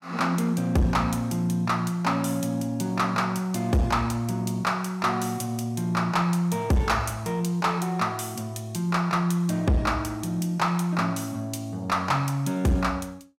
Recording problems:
distorted audio; soft clipping, signal-to-distortion ratio 12 dB

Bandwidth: 16 kHz